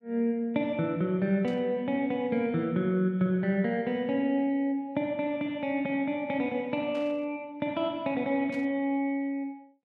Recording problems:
burst of static; at 1.5 s, at 7 s and at 8.5 s; peak -15 dB vs average level

